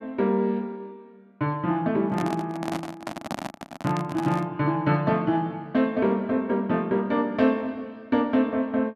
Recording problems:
handling noise; from 2 to 4.5 s; peak -2 dB vs average level

